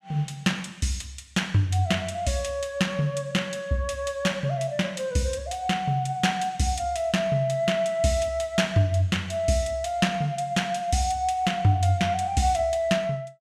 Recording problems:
none

